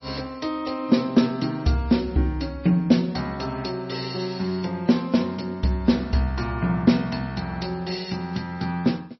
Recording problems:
codec artefacts; MP3, log-spectral distance 3 dB, nothing above 5.7 kHz

